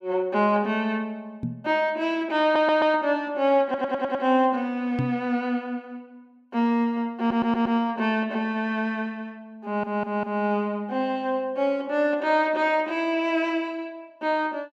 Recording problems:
microphone thump; at 1.5 s and at 5 s; peak +1 dB vs average level
stutter; 4 times, first at 2.5 s

